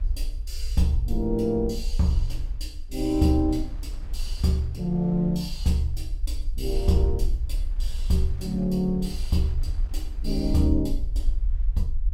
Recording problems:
low-frequency rumble; below 50 Hz, SNR 6 dB
wind noise; below 190 Hz, SNR 24 dB

